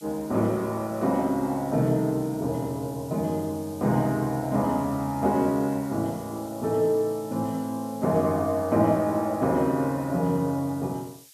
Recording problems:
background hiss; slope +6 dB per octave, SNR 22 dB

